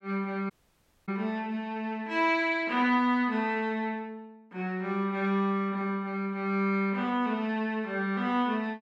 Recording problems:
audio cutting out; at 0.5 s for 0.5 s

